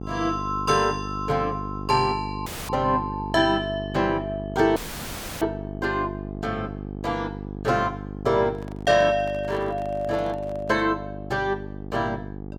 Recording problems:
hum; 50 Hz, harmonics up to 900 Hz, SNR 9 dB
audio cutting out; at 2.5 s and at 5 s for 0.5 s
handling noise; from 8.5 to 11 s; peak -12 dB vs average level

